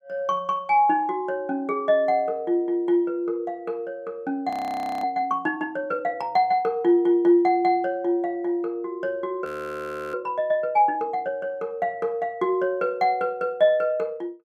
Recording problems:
audio freezing; at 4.5 s for 0.5 s and at 9.5 s for 0.5 s

